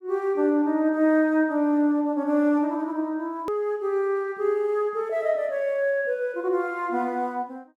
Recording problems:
edit click; at 3.5 s

